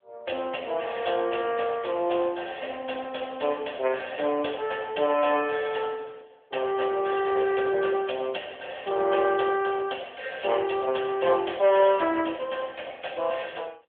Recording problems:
telephone audio; 280 Hz to 3.3 kHz, AMR-NB

